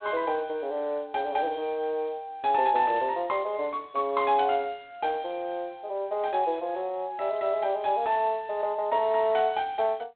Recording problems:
telephone audio; 240 Hz to 4 kHz, G.726

